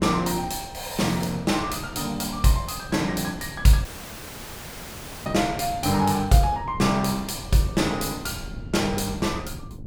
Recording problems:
wind noise; below 190 Hz, SNR 15 dB
dropout; at 4 s for 1.5 s

